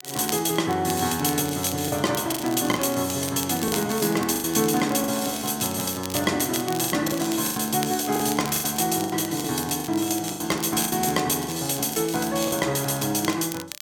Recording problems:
crackle; vinyl, SNR 13 dB
packet loss; 8% of the sound replaced, filled with the last packet

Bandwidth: 17 kHz